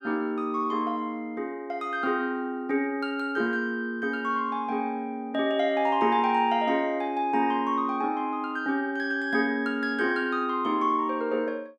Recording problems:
none

